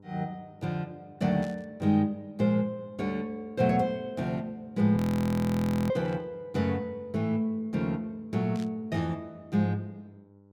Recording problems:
hum; 50 Hz, harmonics up to 1 kHz, SNR 27 dB
burst of static; at 1.5 s, at 6 s and at 8.5 s; peak -15 dB vs average level
audio freezing; at 5 s for 1 s

